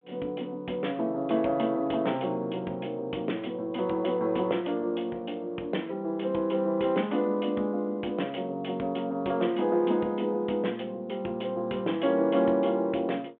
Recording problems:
phone line; 220 Hz to 3.4 kHz, G.726

